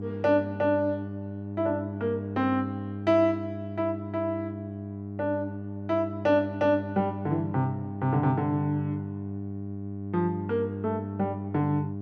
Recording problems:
electrical hum; 50 Hz, harmonics up to 700 Hz, SNR 7 dB

